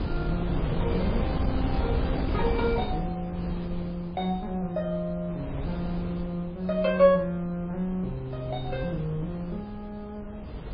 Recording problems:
lossy codec; MP3, log-spectral distance 2 dB
wind on the microphone; below 260 Hz, SNR 4 dB

